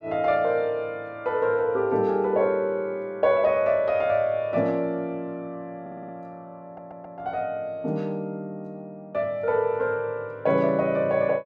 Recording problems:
audio stuttering; at 6 s and at 6.5 s

